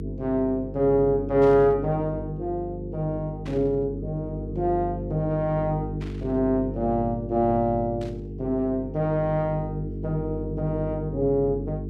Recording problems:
hum; 50 Hz, harmonics up to 450 Hz, SNR 8 dB
static burst; 4 times, first at 1.5 s; peak -14 dB vs average level

